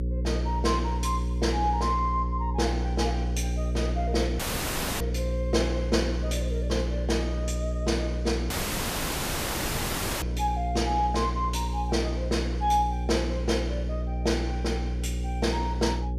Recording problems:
hum; 60 Hz, harmonics up to 540 Hz, SNR 1 dB
audio cutting out; at 4.5 s for 0.5 s and at 8.5 s for 1.5 s

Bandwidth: 14.5 kHz